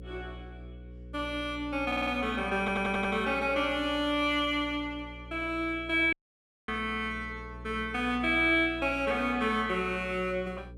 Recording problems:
electrical hum; 60 Hz, harmonics up to 540 Hz, SNR 17 dB
audio stuttering; at 2 s and at 2.5 s
dropout; at 6 s for 0.5 s

